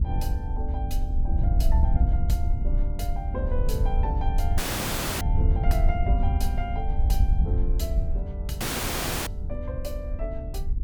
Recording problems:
wind noise; below 72 Hz, SNR -8 dB
audio cutting out; at 4.5 s for 0.5 s and at 8.5 s for 0.5 s

